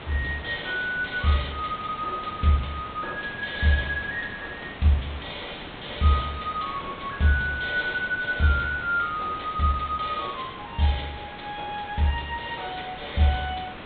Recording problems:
treble cut off; nothing above 4 kHz
background hiss; SNR 12 dB

